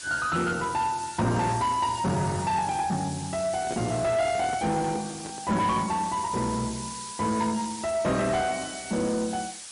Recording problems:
codec artefacts; MP3, log-spectral distance 12 dB, nothing above 10.4 kHz
distorted audio; soft clipping, signal-to-distortion ratio 12 dB
hiss; slope +2 dB per octave, SNR 11 dB
microphone handling noise; from 3.5 to 5.5 s; peak -3 dB vs average level

